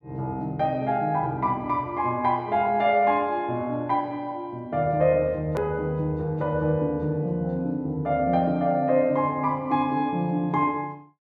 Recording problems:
edit click; at 5.5 s

